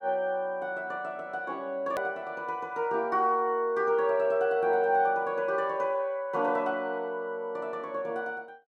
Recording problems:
edit click; at 2 s

